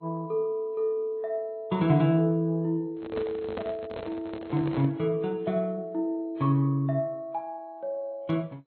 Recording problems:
lossy compression; MP2, then AAC, log-spectral distance 2 dB, nothing above 3.6 kHz
handling noise; from 3 to 5 s; peak -3 dB vs average level

